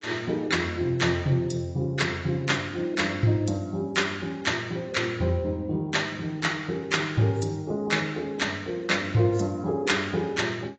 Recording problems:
lossy compression; AAC, log-spectral distance 3 dB, nothing above 7.6 kHz

